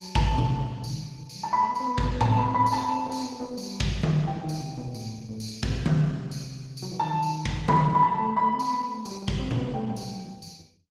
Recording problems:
lossy codec; Opus, log-spectral distance 3 dB, nothing above 18.3 kHz

